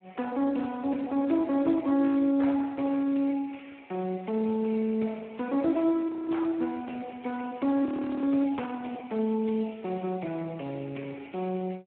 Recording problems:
phone line; 240 Hz to 3.3 kHz, Speex
audio freezing; at 6 s and at 8 s

